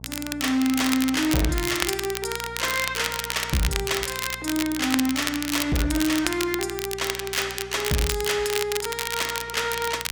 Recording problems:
distorted audio; hard clipping, uneven, signal-to-distortion ratio 12 dB
hum; 60 Hz, harmonics up to 900 Hz, SNR 19 dB
crackle; vinyl, SNR 4 dB

